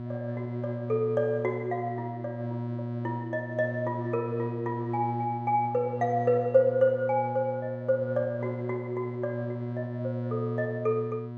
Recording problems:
hum; 60 Hz, harmonics up to 960 Hz, SNR 6 dB

